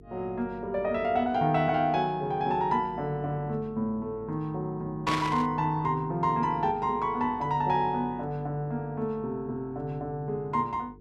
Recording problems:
hum; 50 Hz, harmonics up to 450 Hz, SNR 22 dB
static burst; at 5 s; peak +1 dB vs average level

